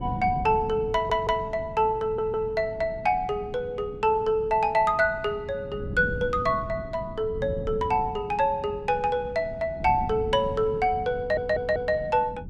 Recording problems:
wind on the microphone; below 210 Hz, SNR 13 dB
stutter; at 1 s, at 2 s and at 11 s

